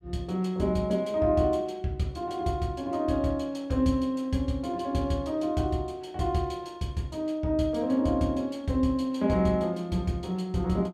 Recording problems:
none

